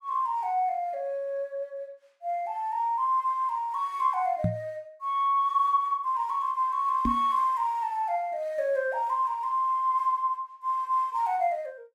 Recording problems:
microphone thump; at 4.5 s and at 7 s; peak +4 dB vs average level

